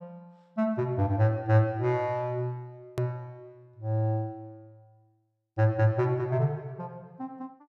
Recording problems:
edit click; at 3 s

